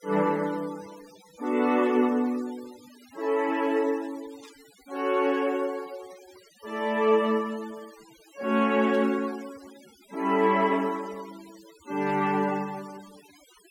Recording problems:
noise reduction artefacts; signal-to-artefact ratio 23 dB
static burst; at 4.5 s, at 9 s and at 12 s; peak -21 dB vs average level

